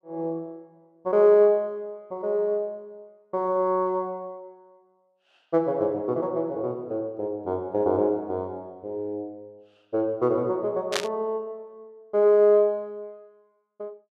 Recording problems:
static burst; at 11 s; peak +3 dB vs average level

